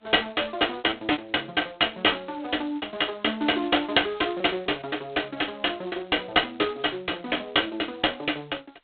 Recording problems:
telephone audio; 240 Hz to 3.6 kHz, G.726
packet loss; 4% of the sound replaced, filled with repeated pitch periods

